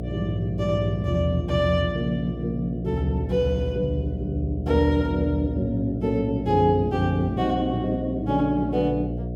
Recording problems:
electrical hum; 60 Hz, harmonics up to 720 Hz, SNR 8 dB

